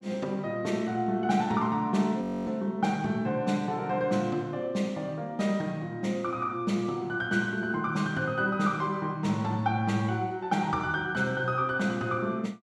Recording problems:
audio freezing; at 2 s

